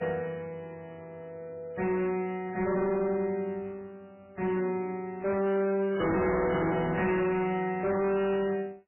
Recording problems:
lossy compression; MP3, log-spectral distance 2 dB, nothing above 2.4 kHz
distortion; hard clipping, signal-to-distortion ratio 7 dB
static burst; at 5.5 s; peak -16 dB vs average level

